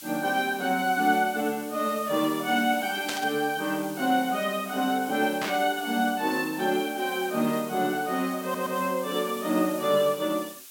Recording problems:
background hiss; slope +3 dB per octave, SNR 15 dB
burst of static; at 3 s and at 5.5 s; peak -1 dB vs average level
stutter; at 8.5 s

